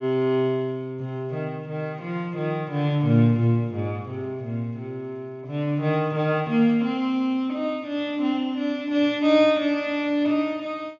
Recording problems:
low-pass filter; nothing above 6.9 kHz

